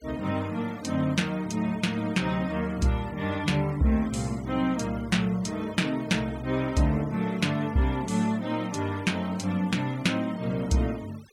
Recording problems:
denoising artefacts; signal-to-artefact ratio 22 dB

